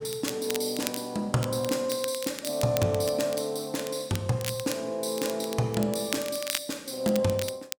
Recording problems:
crackle; vinyl, SNR 9 dB

